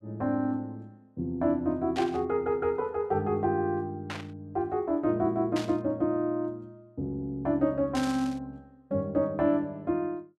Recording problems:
burst of static; 4 times, first at 2 s; peak -4 dB vs average level

